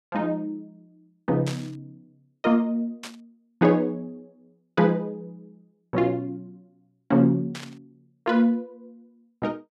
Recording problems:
burst of static; at 1.5 s, at 3 s and at 7.5 s; peak -7 dB vs average level

